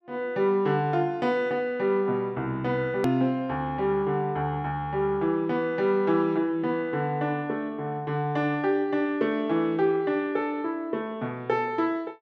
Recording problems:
click at an edit; at 3 s

